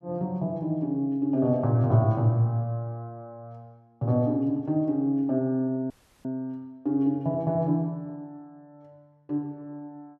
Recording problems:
audio cutting out; at 6 s

